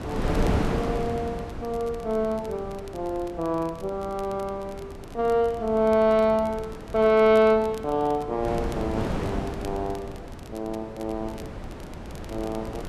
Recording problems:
wind noise; below 520 Hz, SNR 9 dB
crackling; vinyl, SNR 26 dB

